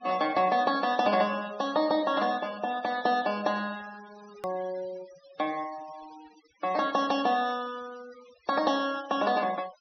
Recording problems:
treble cut off; nothing above 6 kHz
denoising artefacts; signal-to-artefact ratio 19 dB
edit click; at 4.5 s

